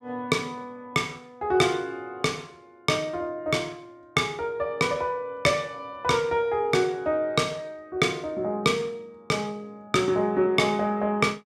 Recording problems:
none

